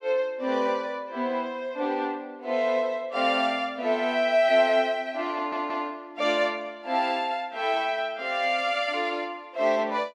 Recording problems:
audio stuttering; at 5.5 s

